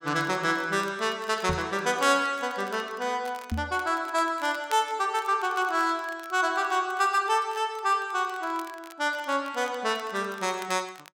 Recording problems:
crackle; vinyl, SNR 22 dB
microphone thump; at 1.5 s and at 3.5 s; peak 0 dB vs average level

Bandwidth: 16.5 kHz